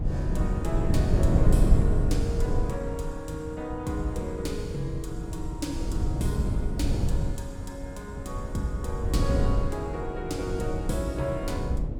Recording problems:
wind on the microphone; below 120 Hz, SNR -4 dB

